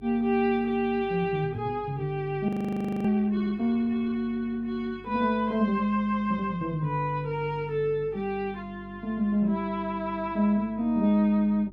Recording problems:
mains hum; 50 Hz, harmonics up to 400 Hz, SNR 22 dB
frozen audio; at 2.5 s for 0.5 s

